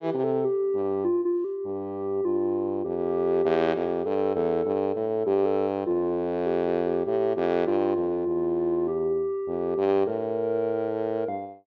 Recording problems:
low-pass filter; nothing above 7.5 kHz

